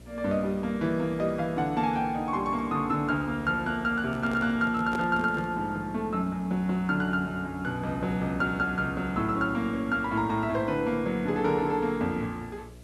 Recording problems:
hum; 60 Hz, harmonics up to 660 Hz, SNR 21 dB
background hiss; slope -2 dB per octave, SNR 30 dB
handling noise; from 4 to 5.5 s; peak -4 dB vs average level

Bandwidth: 12.5 kHz